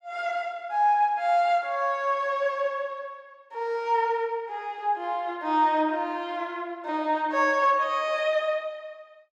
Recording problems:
none

